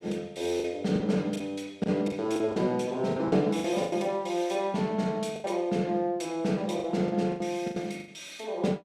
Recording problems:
lost packets; 10% of the sound replaced, filled with the last packet

